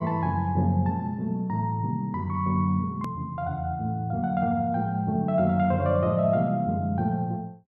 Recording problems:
click at an edit; at 3 s

